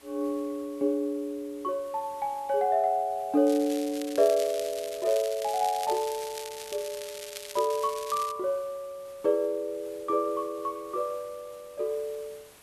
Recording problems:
hiss; slope -2 dB per octave, SNR 24 dB
crackle; from 3.5 to 8.5 s; loose cable, SNR 12 dB

